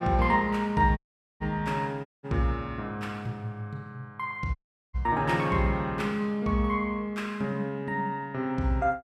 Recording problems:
audio cutting out; at 1 s, at 2 s and at 4.5 s

